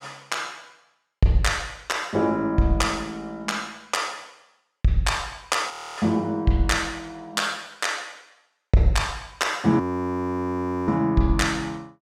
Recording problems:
frozen audio; at 5.5 s and at 10 s for 1 s

